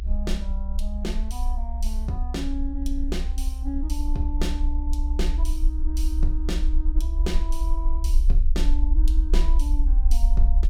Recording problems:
low-frequency rumble; below 52 Hz, strongest tone 26 Hz, SNR -8 dB

